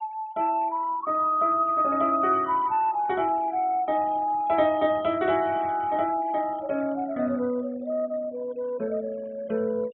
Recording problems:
treble missing; nothing above 3.7 kHz
denoising artefacts; signal-to-artefact ratio 24 dB

